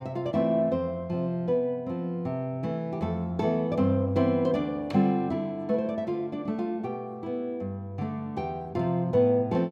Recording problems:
none

